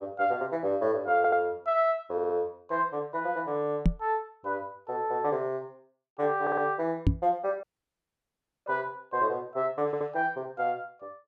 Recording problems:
audio stuttering; 4 times, first at 1 s
microphone bump; at 4 s and at 7 s; peak +9 dB vs average level
audio cutting out; at 7.5 s for 1 s

